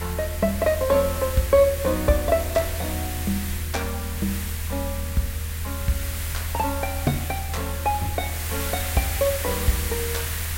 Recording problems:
hiss; SNR 6 dB
rumble; below 82 Hz, strongest tone 80 Hz, SNR 5 dB

